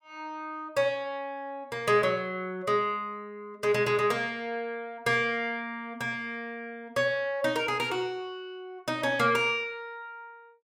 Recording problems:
none

